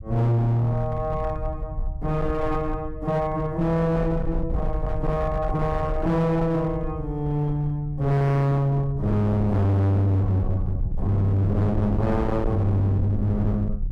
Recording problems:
distortion; hard clipping, signal-to-distortion ratio 7 dB
rumble; below 98 Hz, SNR 8 dB

